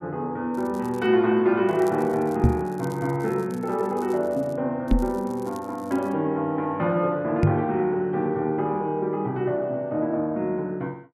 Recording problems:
crackling; at 0.5 s, from 1.5 to 4.5 s and from 5 to 6 s; loose cable, SNR 26 dB
knock on the microphone; at 2.5 s, at 5 s and at 7.5 s; peak +9 dB vs average level

